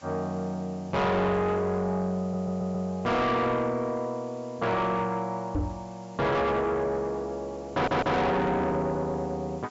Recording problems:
low-pass filter; nothing above 8 kHz
distortion; soft clipping, signal-to-distortion ratio 6 dB
hiss; SNR 27 dB
stutter; at 2 s and at 7.5 s
microphone bump; at 5.5 s; peak +2 dB vs average level

